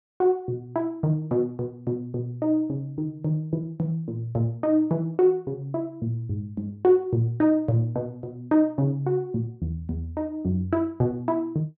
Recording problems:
none

